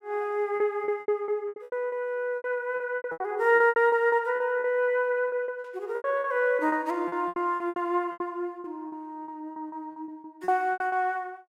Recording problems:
packet loss; 18% of the sound replaced, filled with repeated pitch periods

